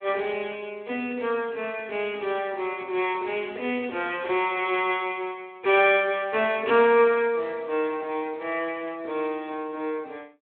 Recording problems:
telephone audio; 260 Hz to 3.4 kHz, Speex

